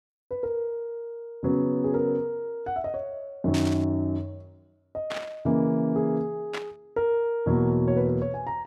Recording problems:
burst of static; at 3.5 s, at 5 s and at 6.5 s; peak -3 dB vs average level

